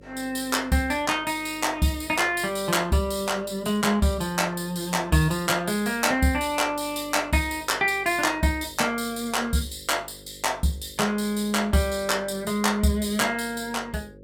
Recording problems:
hum; 50 Hz, harmonics up to 550 Hz, SNR 24 dB

